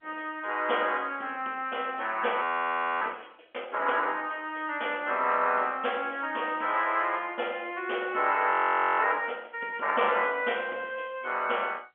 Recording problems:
phone line; 320 Hz to 3.3 kHz, G.711
audio freezing; at 2.5 s for 0.5 s and at 8.5 s

